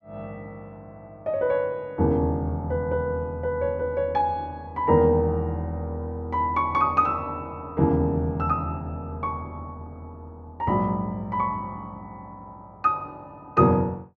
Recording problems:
none

